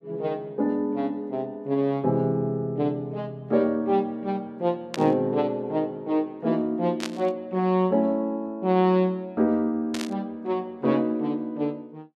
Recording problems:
static burst; at 5 s, at 7 s and at 10 s; peak -3 dB vs average level

